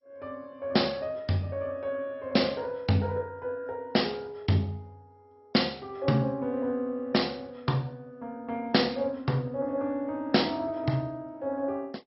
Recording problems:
lossy codec; MP2, log-spectral distance 3 dB, nothing above 5.5 kHz

